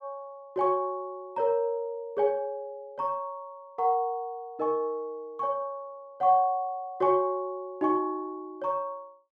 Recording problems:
none

